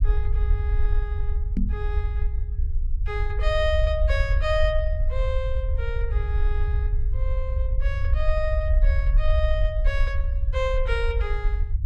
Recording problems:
low-frequency rumble; below 62 Hz, SNR -4 dB
microphone bump; at 1.5 s; peak +6 dB vs average level

